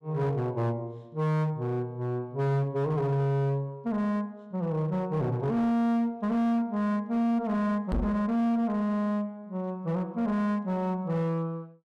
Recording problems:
distortion; hard clipping, signal-to-distortion ratio 10 dB
microphone thump; at 8 s; peak +2 dB vs average level

